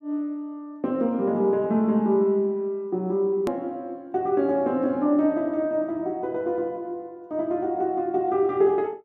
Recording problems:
click at an edit; at 3.5 s

